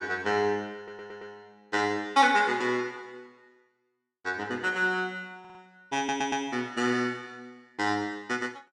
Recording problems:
stutter; at 1 s, at 5.5 s and at 6 s

